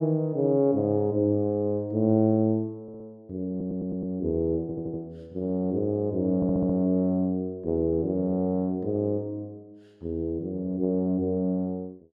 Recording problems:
audio stuttering; 4 times, first at 3 s

